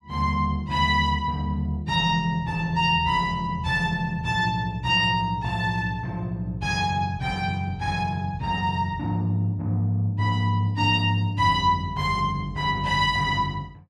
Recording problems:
none

